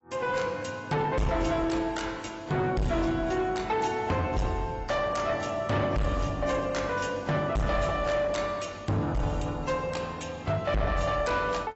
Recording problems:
lossy compression; AAC, log-spectral distance 3 dB, nothing above 7.6 kHz
distortion; soft clipping, signal-to-distortion ratio 7 dB

